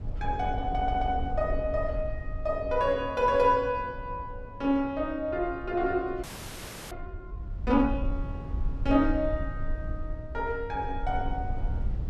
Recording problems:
low-frequency rumble; below 72 Hz, SNR 8 dB
stutter; at 1 s
audio freezing; at 6 s for 0.5 s

